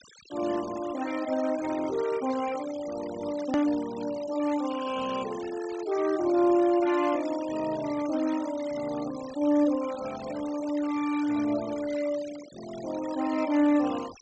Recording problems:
low-pass filter; nothing above 8 kHz
denoising artefacts; signal-to-artefact ratio 16 dB
edit click; at 3.5 s

